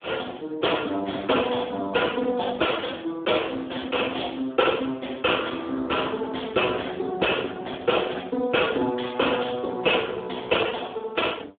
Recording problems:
telephone audio; 220 Hz to 3.6 kHz, Speex

